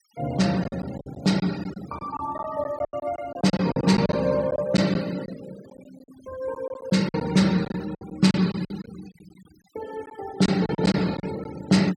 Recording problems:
denoising artefacts; signal-to-artefact ratio 19 dB
packet loss; 12% of the sound replaced, filled with silence

